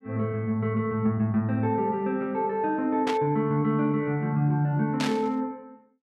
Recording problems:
burst of static; at 3 s and at 5 s; peak -1 dB vs average level

